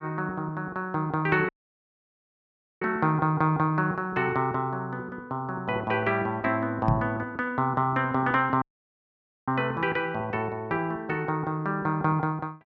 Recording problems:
audio cutting out; at 1.5 s for 1.5 s and at 8.5 s for 1 s
microphone thump; at 7 s; peak +6 dB vs average level

